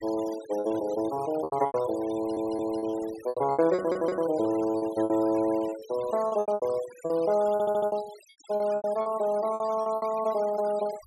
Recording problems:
noise reduction artefacts; signal-to-artefact ratio 18 dB
lost packets; 14% of the sound replaced, filled with repeated pitch periods
audio stuttering; at 2 s, at 4 s and at 7.5 s

